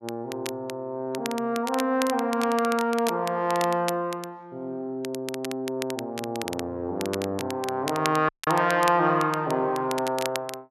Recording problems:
crackle; vinyl, SNR 11 dB
dropout; at 8.5 s

